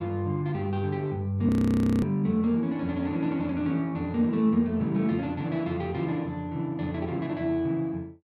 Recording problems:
frozen audio; at 1.5 s for 0.5 s

